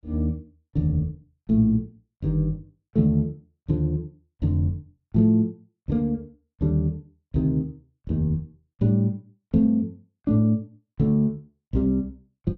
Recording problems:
none

